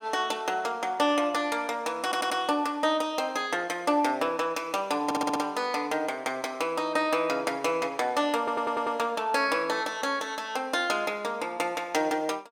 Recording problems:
audio stuttering; at 2 s, at 5 s and at 8.5 s

